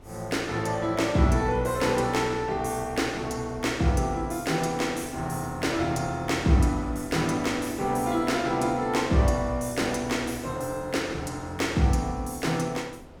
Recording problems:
wind on the microphone; below 510 Hz, SNR 21 dB

